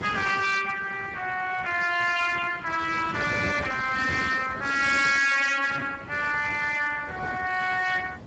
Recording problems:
lossy codec; Speex, log-spectral distance 5 dB, nothing above 7.3 kHz
distorted audio; hard clipping, signal-to-distortion ratio 11 dB
wind on the microphone; below 580 Hz, SNR 12 dB

